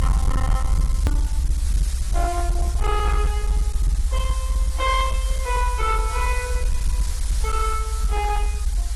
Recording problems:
lossy compression; AAC, log-spectral distance 5 dB
distorted audio; hard clipping, uneven, signal-to-distortion ratio 10 dB
background hiss; slope 0 dB per octave, SNR 8 dB
low-frequency rumble; below 62 Hz, strongest tone 44 Hz, SNR -3 dB
click at an edit; at 1 s

